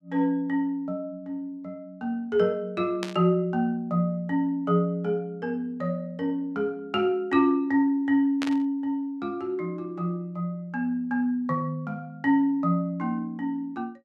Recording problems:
static burst; at 3 s and at 8.5 s; peak -2 dB vs average level

